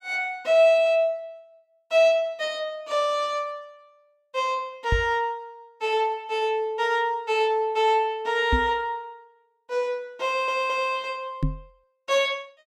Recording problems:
microphone bump; at 5 s, at 8.5 s and at 11 s; peak +3 dB vs average level
audio stuttering; at 10 s

